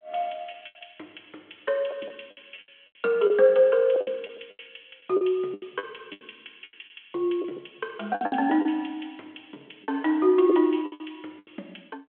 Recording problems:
phone line; 260 Hz to 3.4 kHz, G.726
lost packets; 12% of the sound replaced, filled with the last packet

